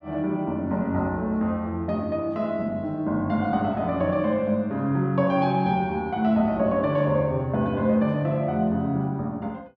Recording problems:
none

